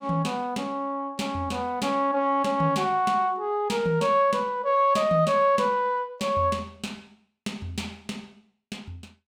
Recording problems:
none

